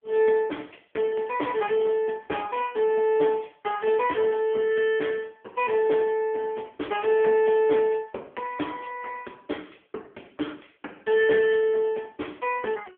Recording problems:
phone line; 240 Hz to 3.3 kHz, AMR-NB

